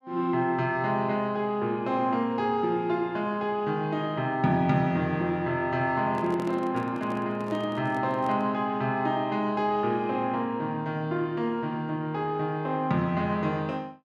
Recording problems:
handling noise; from 6 to 8.5 s; peak -6 dB vs average level

